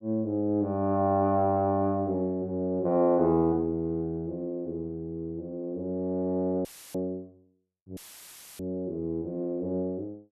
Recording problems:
audio cutting out; at 6.5 s and at 8 s for 0.5 s; filled with static

